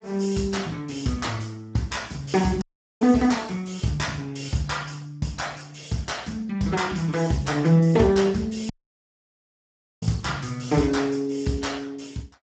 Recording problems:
lossy codec; Speex, log-spectral distance 5 dB, nothing above 7.6 kHz
dropout; at 2.5 s and at 8.5 s for 1.5 s

